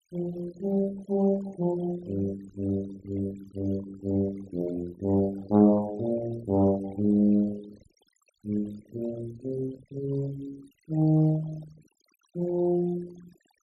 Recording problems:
noise reduction artefacts; signal-to-artefact ratio 20 dB

